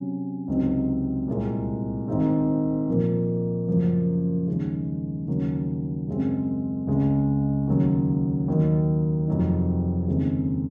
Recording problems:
none

